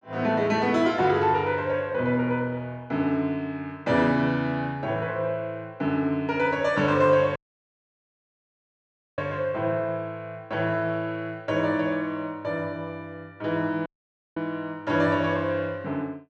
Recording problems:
audio cutting out; at 7.5 s for 2 s and at 14 s for 0.5 s

